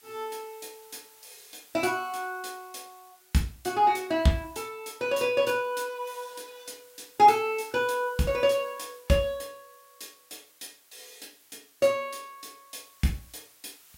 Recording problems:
hiss; slope +2 dB per octave, SNR 27 dB

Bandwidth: 16 kHz